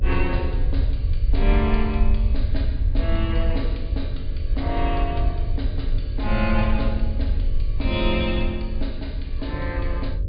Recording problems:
low-pass filter; nothing above 4.9 kHz
hum; 50 Hz, harmonics up to 600 Hz, SNR 11 dB
low-frequency rumble; below 66 Hz, SNR -3 dB

